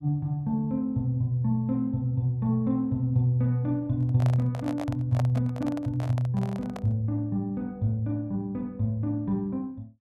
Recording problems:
handling noise; from 4 to 7 s; peak -3 dB vs average level

